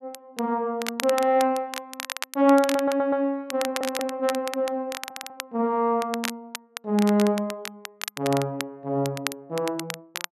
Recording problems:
crackling; vinyl, SNR 10 dB
audio stuttering; at 2.5 s, at 3.5 s and at 5 s

